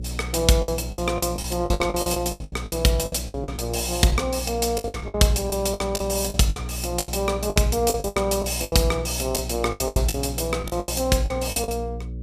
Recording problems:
hum; 60 Hz, harmonics up to 540 Hz, SNR 10 dB
packet loss; 17% of the sound replaced, filled with the last packet

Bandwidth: 14.5 kHz